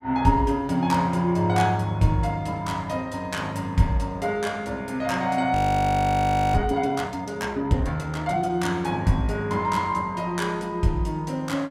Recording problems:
frozen audio; at 5.5 s for 1 s

